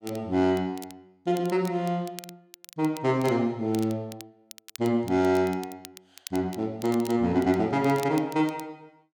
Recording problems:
crackle; vinyl, SNR 20 dB

